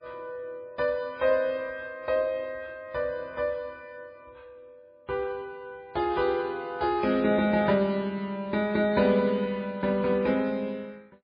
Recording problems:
lossy codec; MP3, log-spectral distance 2 dB, nothing above 4.1 kHz

